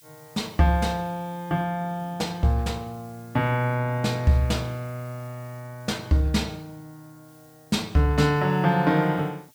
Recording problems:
hiss; slope +5 dB per octave, SNR 28 dB

